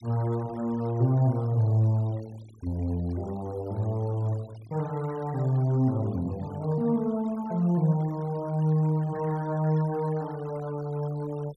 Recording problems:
noise reduction artefacts; signal-to-artefact ratio 24 dB

